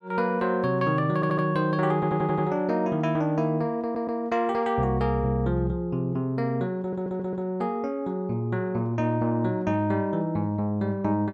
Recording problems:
stutter; 4 times, first at 1 s

